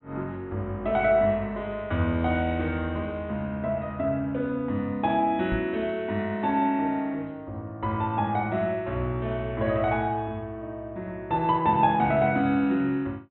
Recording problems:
treble missing; nothing above 4 kHz
knock on the microphone; at 5.5 s; peak -2 dB vs average level

